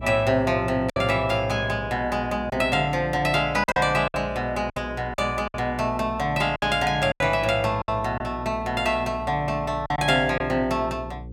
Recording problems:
mains hum; 60 Hz, harmonics up to 540 Hz, SNR 15 dB
packet loss; 6% of the sound replaced, filled with silence

